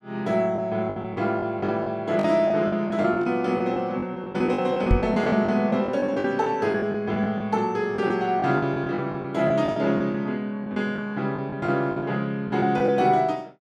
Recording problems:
lost packets; 12% of the sound replaced, filled with the last packet
knock on the microphone; at 5 s; peak +6 dB vs average level

